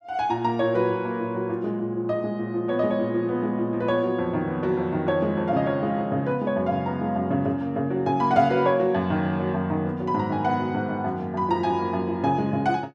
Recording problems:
none

